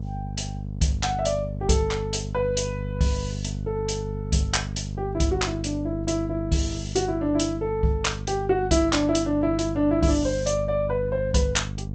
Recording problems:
lossy compression; G.722, then Vorbis, log-spectral distance 4 dB, nothing above 7.8 kHz
mains hum; 50 Hz, harmonics up to 500 Hz, SNR 7 dB

